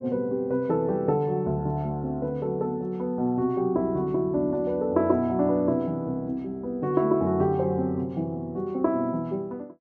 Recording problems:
none

